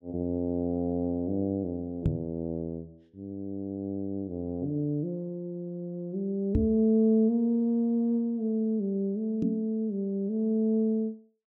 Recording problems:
microphone bump; at 2 s, at 6.5 s and at 9.5 s; peak +6 dB vs average level

